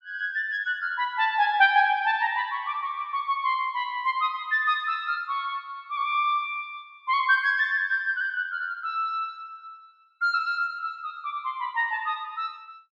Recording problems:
none

